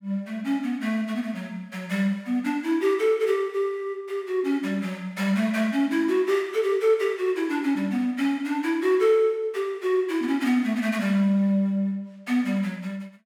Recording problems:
none

